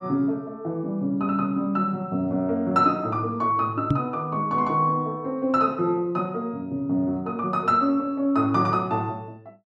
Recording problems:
knock on the microphone; at 4 s; peak +6 dB vs average level

